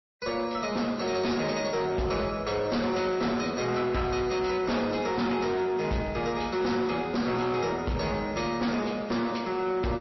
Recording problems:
lossy codec; MP3, log-spectral distance 4 dB, nothing above 5.7 kHz
distortion; hard clipping, uneven, signal-to-distortion ratio 10 dB

